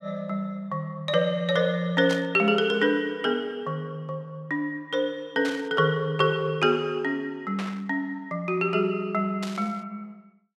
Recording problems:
static burst; 4 times, first at 2 s; peak -4 dB vs average level

